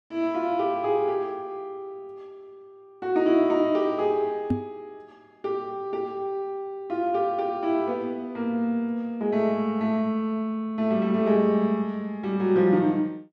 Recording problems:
knock on the microphone; at 4.5 s; peak +5 dB vs average level

